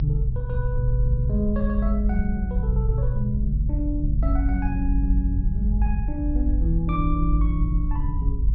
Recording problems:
treble missing; nothing above 5.5 kHz
hum; 60 Hz, harmonics up to 540 Hz, SNR 20 dB
rumble; below 58 Hz, strongest tone 50 Hz, SNR -3 dB

